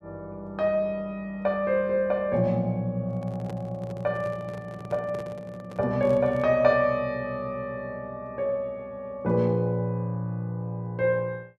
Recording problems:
microphone handling noise; from 3 to 6.5 s; peak -8 dB vs average level

